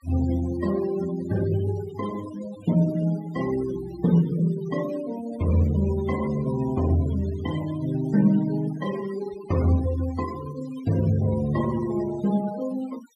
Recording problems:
denoising artefacts; signal-to-artefact ratio 16 dB

